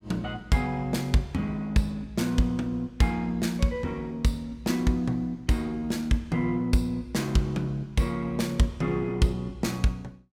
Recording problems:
none

